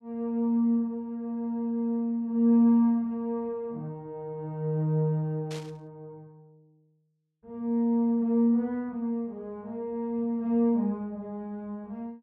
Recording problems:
burst of static; at 5.5 s; peak -11 dB vs average level

